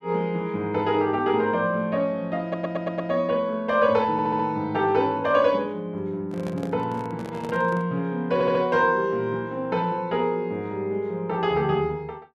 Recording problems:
stutter; at 2.5 s, at 4 s and at 8.5 s
microphone handling noise; from 6.5 to 8 s; peak -7 dB vs average level

